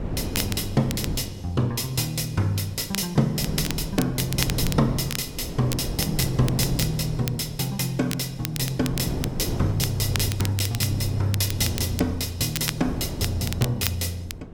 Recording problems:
wind noise; below 310 Hz, SNR 8 dB
crackle; vinyl, SNR 9 dB

